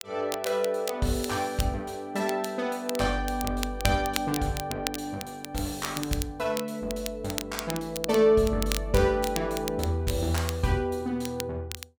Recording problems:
crackle; vinyl, SNR 10 dB

